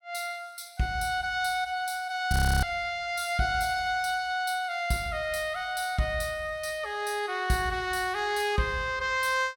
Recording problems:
audio freezing; at 2.5 s

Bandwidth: 17 kHz